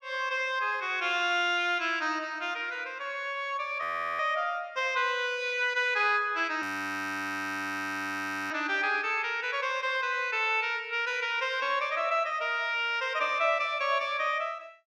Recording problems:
audio freezing; at 4 s and at 6.5 s for 2 s

